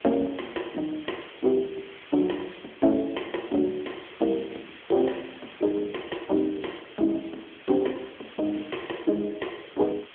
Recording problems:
phone line; 220 Hz to 3.4 kHz, AMR-NB
background hiss; SNR 17 dB

